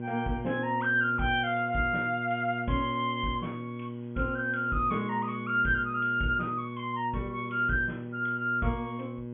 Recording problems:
treble missing; nothing above 3.3 kHz
electrical hum; 60 Hz, harmonics up to 600 Hz, SNR 9 dB

